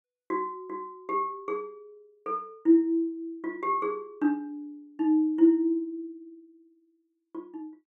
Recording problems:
none

